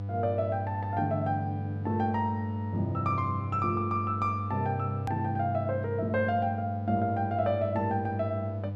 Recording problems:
electrical hum; 50 Hz, harmonics up to 700 Hz, SNR 5 dB
edit click; at 5 s

